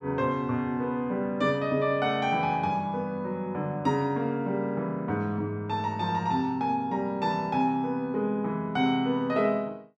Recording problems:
none

